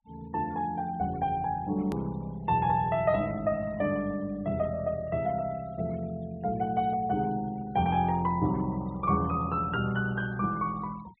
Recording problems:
low-pass filter; nothing above 4 kHz
denoising artefacts; signal-to-artefact ratio 25 dB
edit click; at 2 s

